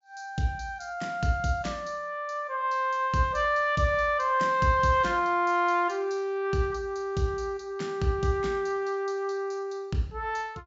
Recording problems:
low-pass filter; nothing above 8 kHz

